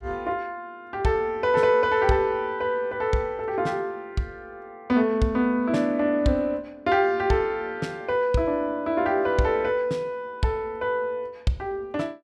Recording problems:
none

